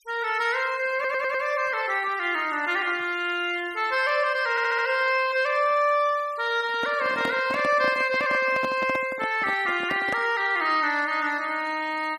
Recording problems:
denoising artefacts; signal-to-artefact ratio 21 dB
stutter; at 1 s and at 4.5 s
microphone handling noise; from 6.5 to 10 s; peak -3 dB vs average level

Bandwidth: 14.5 kHz